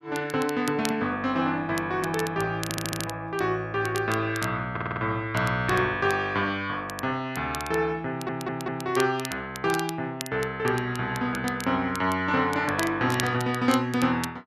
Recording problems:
crackling; vinyl, SNR 13 dB
stutter; at 2.5 s, at 4.5 s and at 8 s

